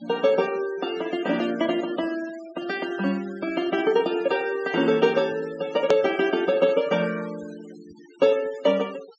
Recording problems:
low-pass filter; nothing above 8 kHz
noise reduction artefacts; signal-to-artefact ratio 19 dB
edit click; at 6 s

